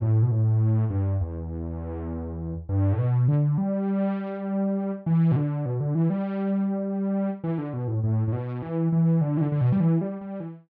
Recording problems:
none

